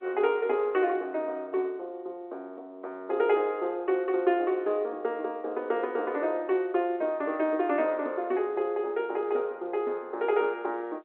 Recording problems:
telephone audio; 300 Hz to 3.3 kHz, G.711

